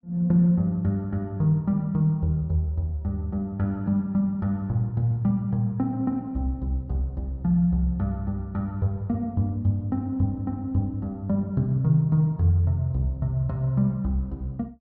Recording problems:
none

